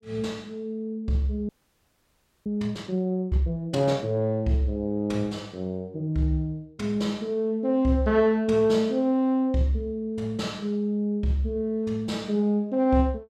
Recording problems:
audio freezing; at 1.5 s for 1 s

